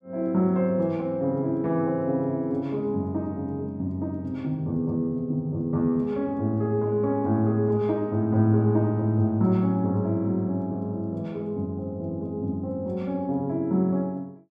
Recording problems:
none

